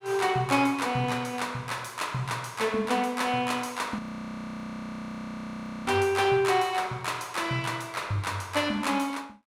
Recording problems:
audio freezing; at 4 s for 2 s

